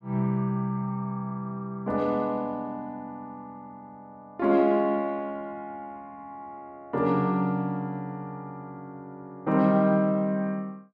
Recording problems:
none

